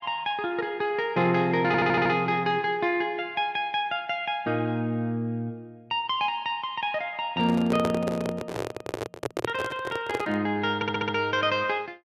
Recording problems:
stutter; at 1.5 s and at 11 s
handling noise; from 7.5 to 10 s; peak +3 dB vs average level

